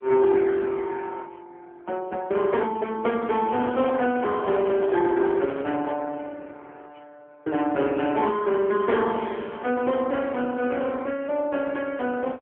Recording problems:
telephone audio; 220 Hz to 3.3 kHz, AMR-NB
handling noise; from 3.5 to 6 s; peak -5 dB vs average level

